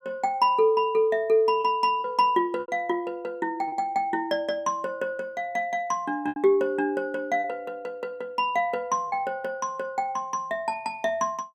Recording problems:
packet loss; 3% of the sound replaced, filled with repeated pitch periods

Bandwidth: 14.5 kHz